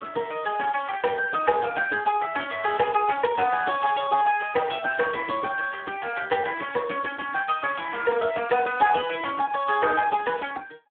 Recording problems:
telephone audio; 280 Hz to 3.3 kHz, Speex

